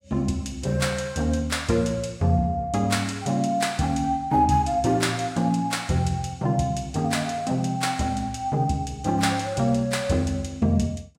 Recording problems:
none

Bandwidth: 16.5 kHz